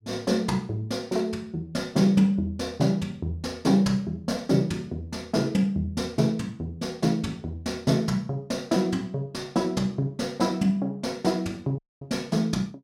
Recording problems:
dropout; at 12 s

